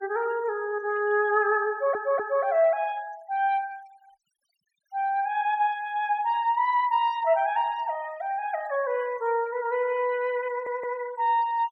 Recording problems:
denoising artefacts; signal-to-artefact ratio 25 dB
stutter; at 1.5 s and at 11 s

